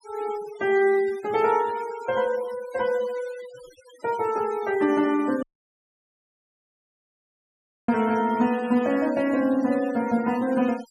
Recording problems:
denoising artefacts; signal-to-artefact ratio 19 dB
audio cutting out; at 5.5 s for 2.5 s

